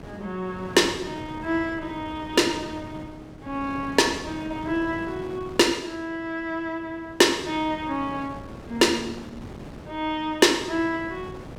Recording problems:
wind on the microphone; below 540 Hz, SNR 16 dB

